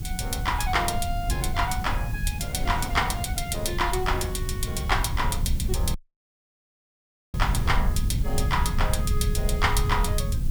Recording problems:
hiss; SNR 17 dB
rumble; below 96 Hz, SNR 1 dB
wind noise; below 320 Hz, SNR 15 dB
dropout; at 6 s for 1.5 s

